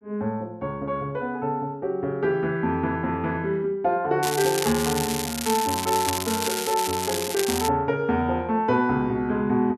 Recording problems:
crackle; from 4 to 7.5 s; loose cable, SNR 4 dB

